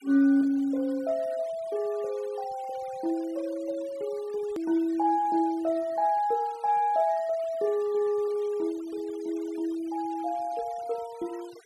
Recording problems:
denoising artefacts; signal-to-artefact ratio 24 dB
edit click; at 4.5 s

